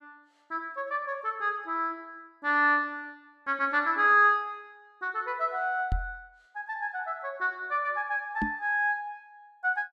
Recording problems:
microphone thump; at 6 s and at 8.5 s; peak +1 dB vs average level

